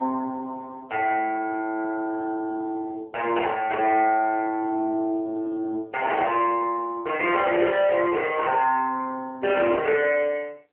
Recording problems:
phone line; 370 Hz to 3.1 kHz, AMR-NB

